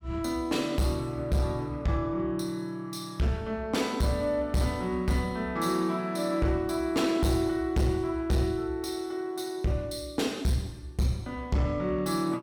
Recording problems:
distorted audio; hard clipping, uneven, signal-to-distortion ratio 11 dB

